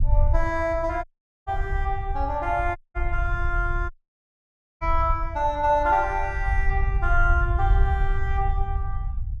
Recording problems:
low-frequency rumble; below 68 Hz, SNR 2 dB
audio cutting out; at 1 s, at 3 s and at 4 s for 1 s

